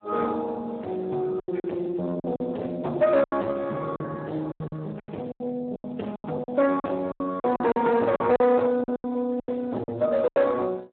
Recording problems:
telephone audio; 280 Hz to 2.8 kHz, Speex
distorted audio; soft clipping, signal-to-distortion ratio 9 dB
lost packets; 13% of the sound replaced, filled with silence

